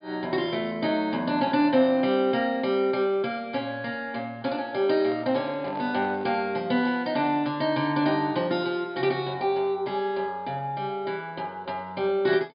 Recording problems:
treble missing; nothing above 5 kHz
handling noise; from 5 to 6.5 s; peak -10 dB vs average level

